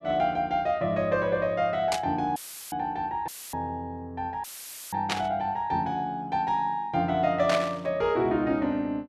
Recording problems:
static burst; at 2 s, at 5 s and at 7.5 s; peak +4 dB vs average level
dropout; at 2.5 s, at 3.5 s and at 4.5 s; filled with static

